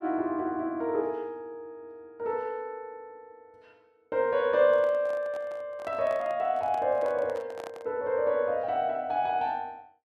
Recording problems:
microphone handling noise; from 4.5 to 8 s; peak -10 dB vs average level

